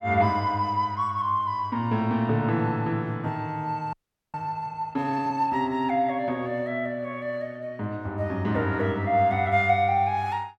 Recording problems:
frozen audio; at 4 s

